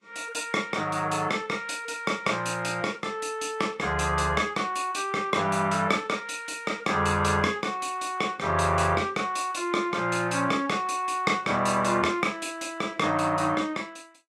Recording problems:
codec artefacts; Vorbis, log-spectral distance 3 dB

